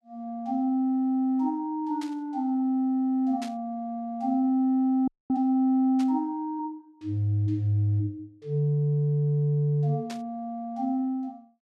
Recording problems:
static burst; 4 times, first at 2 s; peak -10 dB vs average level
audio freezing; at 5 s

